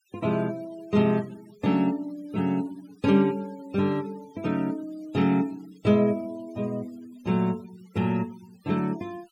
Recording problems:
denoising artefacts; signal-to-artefact ratio 24 dB

